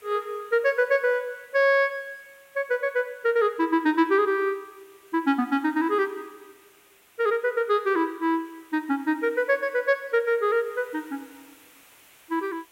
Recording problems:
hiss; SNR 29 dB

